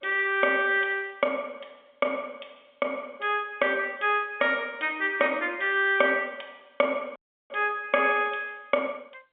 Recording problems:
telephone audio; 190 Hz to 3.6 kHz, G.711
dropout; at 7 s

